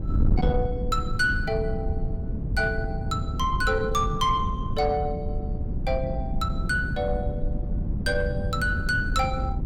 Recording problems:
distortion; soft clipping, signal-to-distortion ratio 12 dB
wind on the microphone; below 150 Hz, SNR 2 dB

